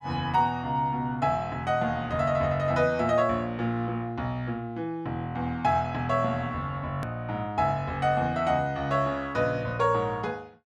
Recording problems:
hard cut with a click; at 7 s

